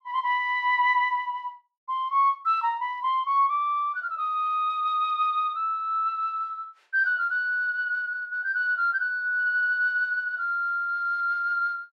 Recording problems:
none

